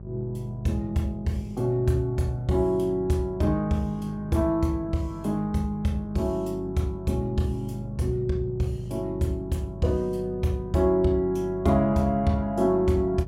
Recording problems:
hum; 50 Hz, harmonics up to 600 Hz, SNR 14 dB

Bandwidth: 16 kHz